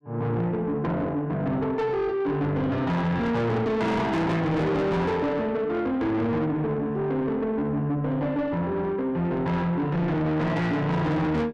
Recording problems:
distortion; soft clipping, signal-to-distortion ratio 7 dB

